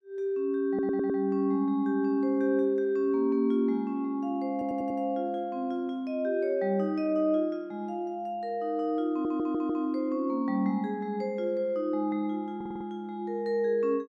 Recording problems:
stutter; 4 times, first at 0.5 s

